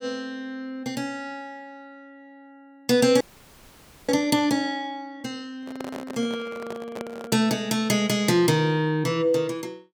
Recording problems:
frozen audio; at 3 s for 1 s
microphone handling noise; from 5.5 to 7.5 s; peak -6 dB vs average level

